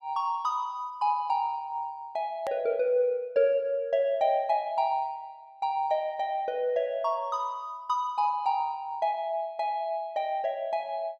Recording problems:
hard cut with a click; at 2.5 s

